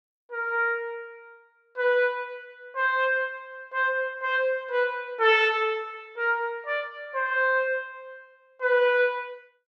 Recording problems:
none

